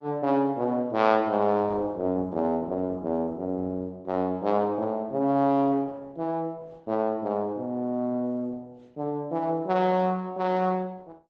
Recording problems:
lossy codec; Opus, log-spectral distance 2 dB

